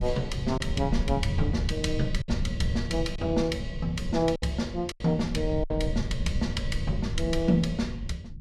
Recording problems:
rumble; below 130 Hz, SNR 4 dB
lost packets; 4% of the sound replaced, filled with silence

